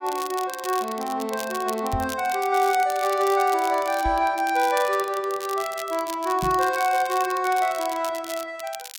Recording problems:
crackle; vinyl, SNR 14 dB
microphone bump; at 2 s, at 4 s and at 6.5 s; peak -2 dB vs average level

